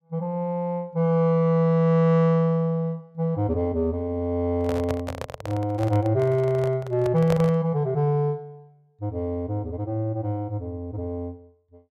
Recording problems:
microphone handling noise; from 4.5 to 7.5 s; peak -2 dB vs average level

